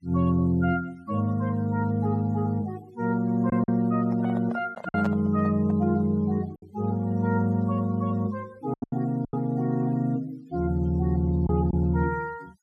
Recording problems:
noise reduction artefacts; signal-to-artefact ratio 27 dB
packet loss; 4% of the sound replaced, filled with silence
microphone handling noise; from 4 to 6 s; peak -4 dB vs average level

